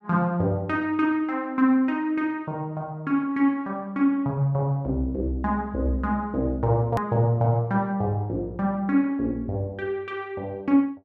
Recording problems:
hard cut with a click; at 7 s

